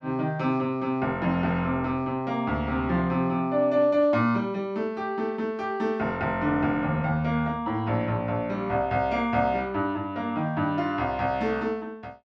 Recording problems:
none

